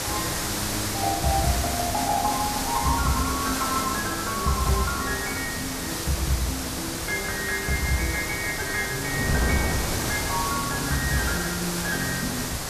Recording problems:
hiss; slope -2 dB per octave, SNR 1 dB
wind noise; below 590 Hz, SNR 8 dB

